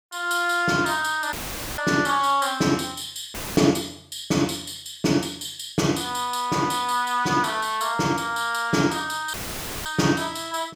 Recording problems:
dropout; at 1.5 s, at 3.5 s and at 9.5 s for 0.5 s; filled with static

